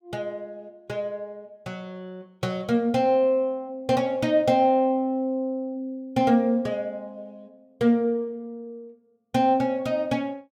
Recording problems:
none

